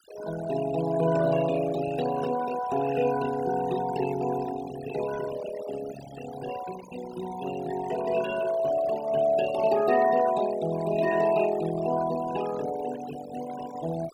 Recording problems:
denoising artefacts; signal-to-artefact ratio 13 dB

